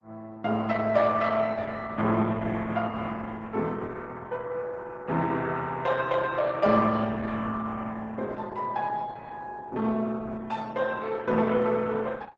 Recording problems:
lossy codec; Opus, log-spectral distance 3 dB, nothing above 7.3 kHz

